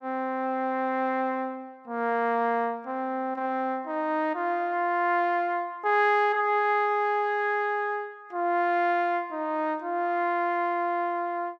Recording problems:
none

